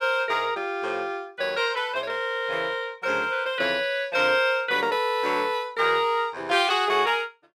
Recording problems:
none

